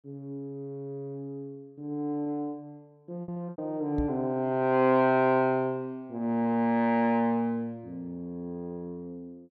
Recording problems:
lost packets; 2% of the sound replaced, filled with repeated pitch periods
knock on the microphone; at 4 s; peak -2 dB vs average level

